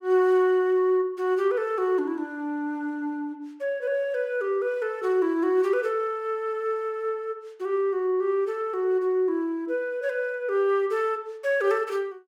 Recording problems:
none

